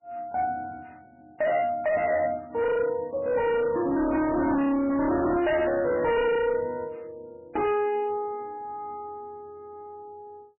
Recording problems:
codec artefacts; MP3, log-spectral distance 2 dB, nothing above 2.5 kHz
distorted audio; hard clipping, signal-to-distortion ratio 7 dB

